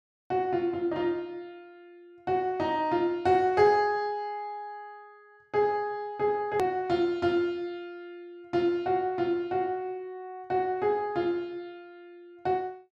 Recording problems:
click at an edit; at 6.5 s

